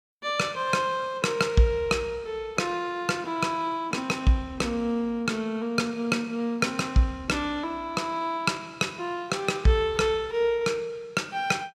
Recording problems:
none

